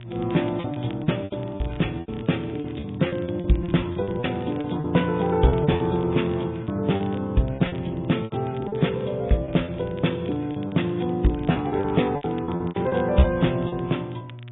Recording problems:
treble cut off; nothing above 3.7 kHz
codec artefacts; MP3, log-spectral distance 4 dB
electrical hum; 60 Hz, harmonics up to 600 Hz, SNR 15 dB
crackling; vinyl, SNR 27 dB
packet loss; 13% of the sound replaced, filled with repeated pitch periods

